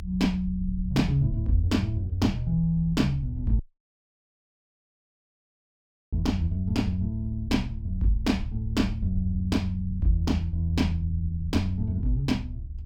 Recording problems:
low-frequency rumble; below 74 Hz, SNR 8 dB
dropout; at 3.5 s for 2.5 s

